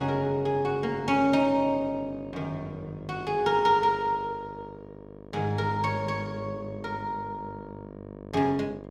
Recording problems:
hum; 50 Hz, harmonics up to 1.3 kHz, SNR 15 dB

